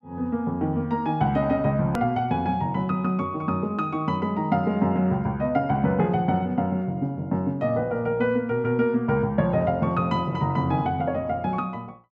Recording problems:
hard cut with a click; at 2 s

